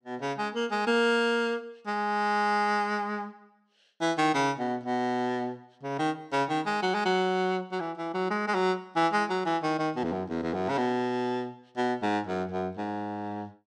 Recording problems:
none

